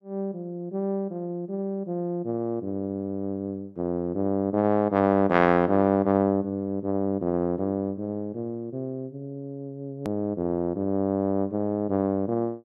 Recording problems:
hard cut with a click; at 10 s

